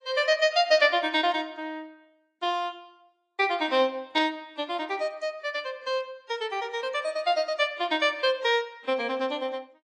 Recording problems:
codec artefacts; AAC, log-spectral distance 2 dB

